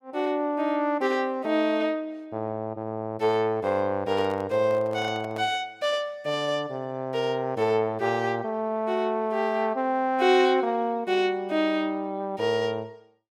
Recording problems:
microphone handling noise; from 4 to 5.5 s; peak -10 dB vs average level

